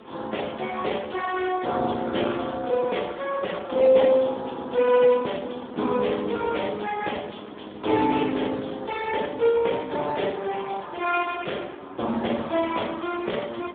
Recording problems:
phone line; 220 Hz to 3.4 kHz, Speex
hiss; SNR 29 dB
wind on the microphone; below 760 Hz, SNR 20 dB

